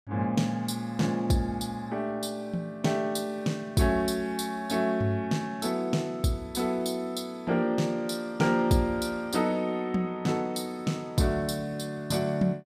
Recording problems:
none

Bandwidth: 15 kHz